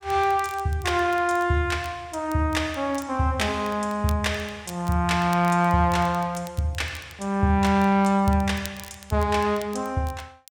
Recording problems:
crackle; vinyl, SNR 22 dB

